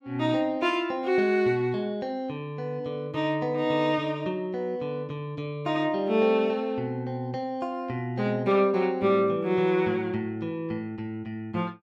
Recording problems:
none

